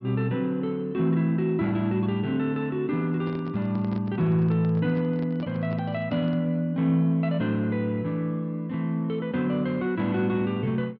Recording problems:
low-pass filter; nothing above 5.5 kHz
handling noise; from 3 to 6.5 s; peak -10 dB vs average level

